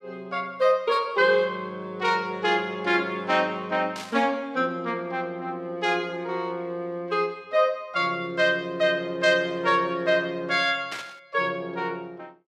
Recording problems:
burst of static; at 4 s and at 11 s; peak -6 dB vs average level

